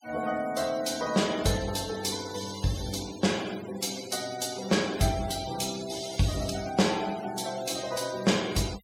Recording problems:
noise reduction artefacts; signal-to-artefact ratio 14 dB

